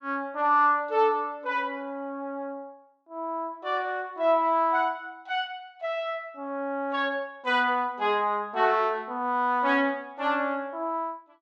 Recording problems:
none

